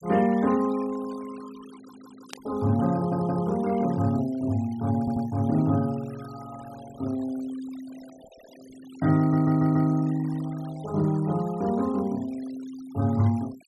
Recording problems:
denoising artefacts; signal-to-artefact ratio 22 dB
audio stuttering; 4 times, first at 2 s
static burst; at 2.5 s; peak -8 dB vs average level

